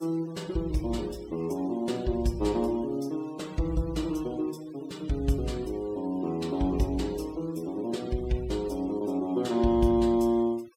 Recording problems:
denoising artefacts; signal-to-artefact ratio 23 dB

